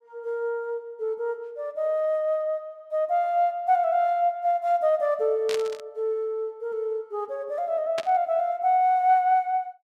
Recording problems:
static burst; at 5.5 s and at 8 s; peak -4 dB vs average level

